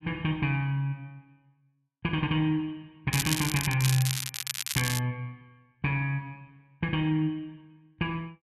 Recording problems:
crackling; from 3 to 5 s; loose cable, SNR 2 dB

